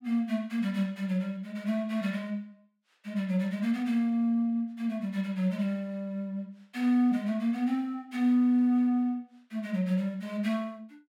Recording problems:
none

